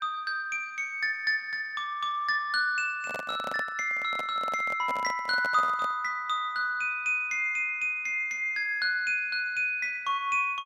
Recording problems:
handling noise; from 3 to 6 s; peak -6 dB vs average level

